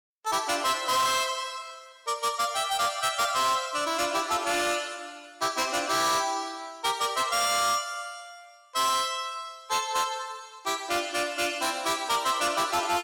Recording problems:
distortion; hard clipping, signal-to-distortion ratio 10 dB

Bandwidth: 17.5 kHz